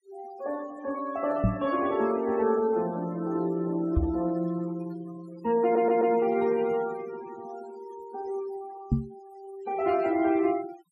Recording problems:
denoising artefacts; signal-to-artefact ratio 19 dB
knock on the microphone; at 1.5 s, at 4 s and at 9 s; peak +6 dB vs average level
stutter; at 5.5 s

